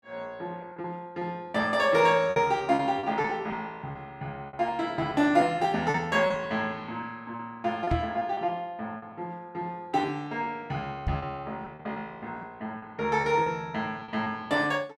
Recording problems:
lost packets; 9% of the sound replaced, filled with repeated pitch periods
microphone thump; at 8 s and at 11 s; peak +2 dB vs average level

